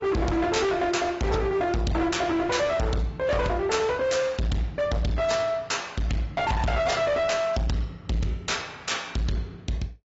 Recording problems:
low-pass filter; nothing above 7.6 kHz
codec artefacts; AAC, log-spectral distance 3 dB
distorted audio; hard clipping, signal-to-distortion ratio 7 dB

